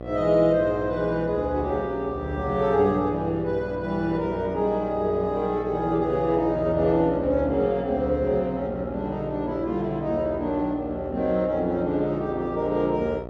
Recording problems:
hum; 60 Hz, harmonics up to 1.4 kHz, SNR 12 dB

